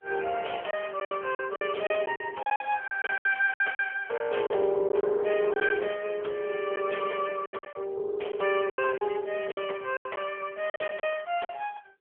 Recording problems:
telephone audio; 370 Hz to 3.2 kHz, AMR-NB
lost packets; 11% of the sound replaced, filled with silence

